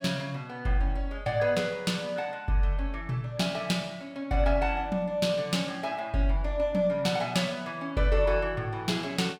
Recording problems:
none

